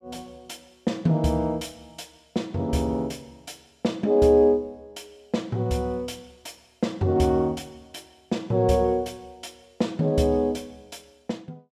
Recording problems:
none

